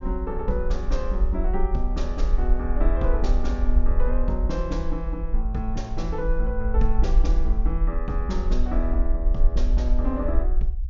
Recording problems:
treble cut off; nothing above 7.2 kHz
low-frequency rumble; below 50 Hz, SNR -4 dB

